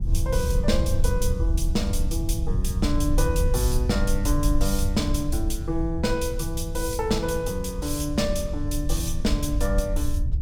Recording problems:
rumble; below 74 Hz, SNR 0 dB

